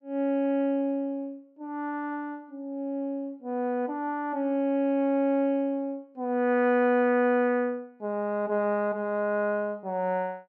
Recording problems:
none

